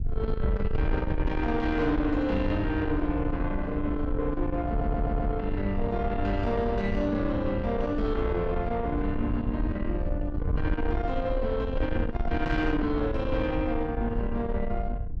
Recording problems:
distorted audio; soft clipping, signal-to-distortion ratio 12 dB
wind noise; below 94 Hz, SNR 4 dB
audio stuttering; at 4.5 s

